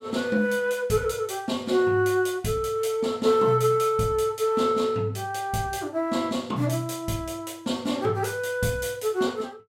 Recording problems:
none

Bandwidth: 16 kHz